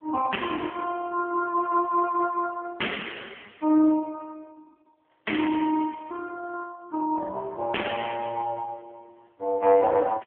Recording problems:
telephone audio; 260 Hz to 3.3 kHz, AMR-NB

